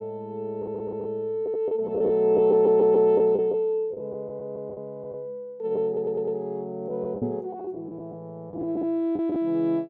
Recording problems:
lost packets; 8% of the sound replaced, filled with the last packet
stutter; at 0.5 s, at 2.5 s and at 6 s
microphone bump; at 7 s; peak 0 dB vs average level

